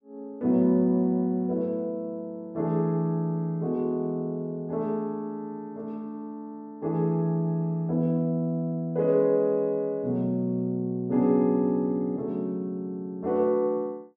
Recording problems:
none

